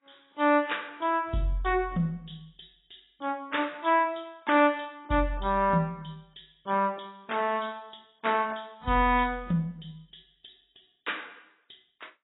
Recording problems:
lossy codec; AAC, log-spectral distance 7 dB, nothing above 3.8 kHz

